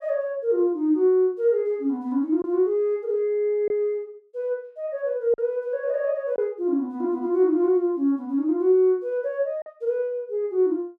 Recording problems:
lost packets; 1.3% of the sound replaced, filled with silence

